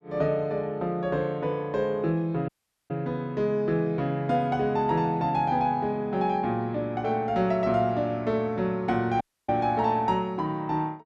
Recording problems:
audio cutting out; at 2.5 s and at 9 s

